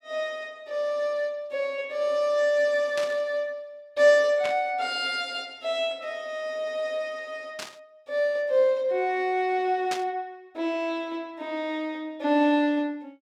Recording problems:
static burst; 4 times, first at 3 s; peak -3 dB vs average level

